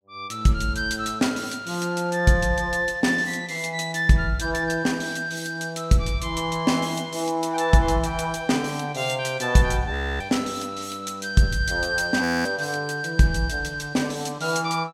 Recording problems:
audio freezing; at 10 s and at 12 s

